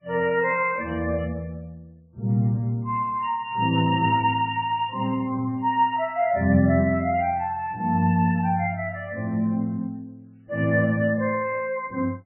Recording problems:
codec artefacts; MP3, log-spectral distance 2 dB, nothing above 2.8 kHz

